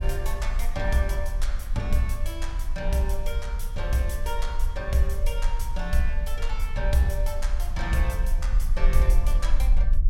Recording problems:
low-frequency rumble; below 42 Hz, SNR -1 dB

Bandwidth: 16 kHz